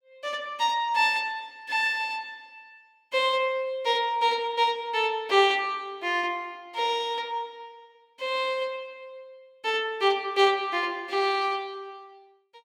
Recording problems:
none

